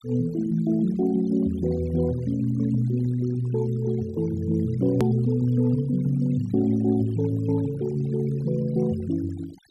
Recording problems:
denoising artefacts; signal-to-artefact ratio 21 dB
edit click; at 5 s

